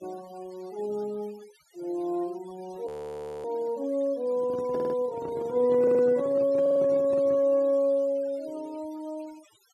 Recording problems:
denoising artefacts; signal-to-artefact ratio 25 dB
audio freezing; at 3 s for 0.5 s
microphone handling noise; from 4.5 to 7.5 s; peak -6 dB vs average level
stutter; at 5 s, at 6 s and at 6.5 s

